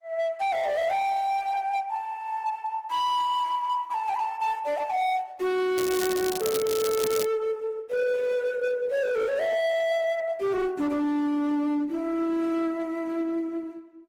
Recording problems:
codec artefacts; Opus, log-spectral distance 2 dB, nothing above 20.1 kHz
distortion; hard clipping, signal-to-distortion ratio 10 dB
crackle; from 6 to 7 s; loose cable, SNR 9 dB

